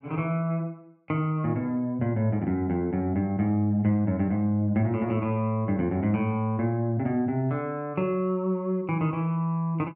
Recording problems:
none

